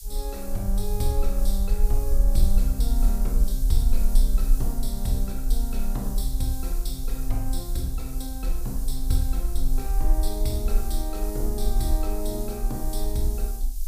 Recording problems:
background hiss; SNR 9 dB
low-frequency rumble; below 40 Hz, SNR -4 dB

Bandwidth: 15 kHz